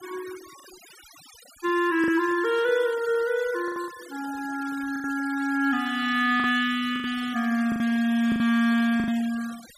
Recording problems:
denoising artefacts; signal-to-artefact ratio 19 dB
lost packets; 7% of the sound replaced, filled with the last packet

